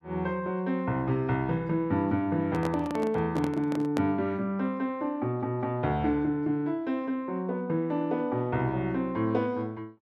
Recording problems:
microphone handling noise; from 2.5 to 4 s; peak 0 dB vs average level

